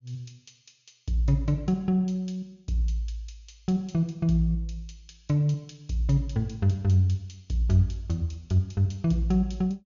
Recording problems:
low-pass filter; nothing above 7 kHz

